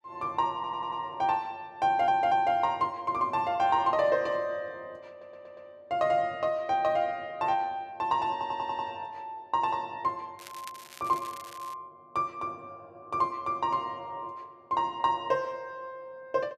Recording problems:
stutter; 4 times, first at 0.5 s
crackle; from 10 to 12 s; loose cable, SNR 18 dB

